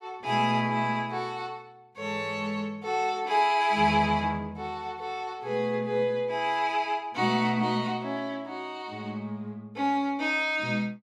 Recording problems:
none

